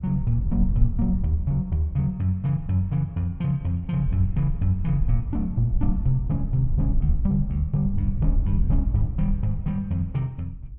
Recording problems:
wind noise; below 68 Hz, SNR 3 dB

